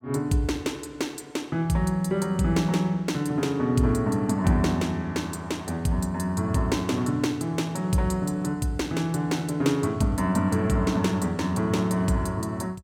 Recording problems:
none

